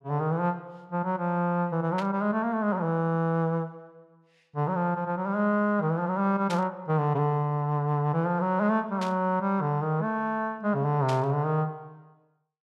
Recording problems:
static burst; 4 times, first at 2 s; peak -6 dB vs average level

